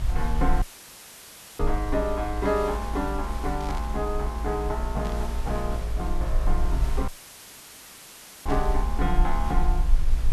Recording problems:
hum; 50 Hz, harmonics up to 450 Hz, SNR 16 dB
background hiss; slope -3 dB per octave, SNR 13 dB
low-frequency rumble; below 56 Hz, strongest tone 20 Hz, SNR 0 dB
audio cutting out; at 0.5 s for 1 s and at 7 s for 1.5 s; filled with static
static burst; 4 times, first at 1.5 s; peak -9 dB vs average level

